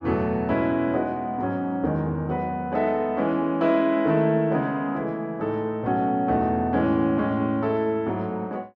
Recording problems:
none

